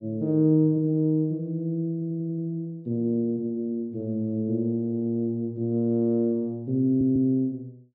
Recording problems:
stutter; at 2 s and at 7 s

